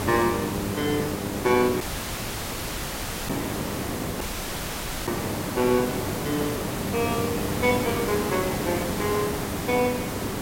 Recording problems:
electrical hum; 50 Hz, harmonics up to 1.4 kHz, SNR 9 dB
background hiss; slope -5 dB per octave, SNR 2 dB
dropout; at 2 s for 1.5 s and at 4 s for 1 s

